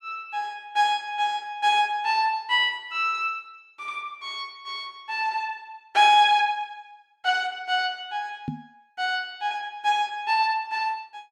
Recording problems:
knock on the microphone; at 8.5 s; peak -2 dB vs average level

